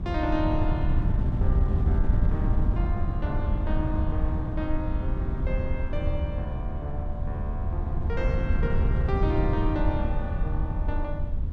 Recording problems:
rumble; below 78 Hz, strongest tone 76 Hz, SNR 5 dB
wind noise; below 100 Hz, SNR -5 dB

